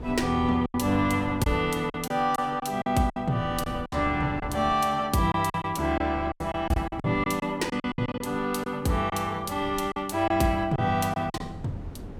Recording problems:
wind noise; below 260 Hz, SNR 15 dB
packet loss; 10% of the sound replaced, filled with silence

